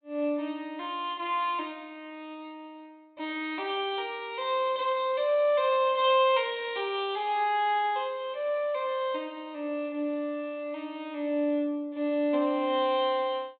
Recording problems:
treble missing; nothing above 4 kHz

